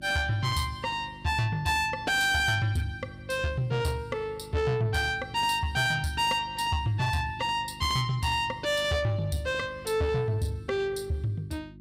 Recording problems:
distortion; soft clipping, signal-to-distortion ratio 10 dB
electrical hum; 50 Hz, harmonics up to 350 Hz, SNR 20 dB

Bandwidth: 15.5 kHz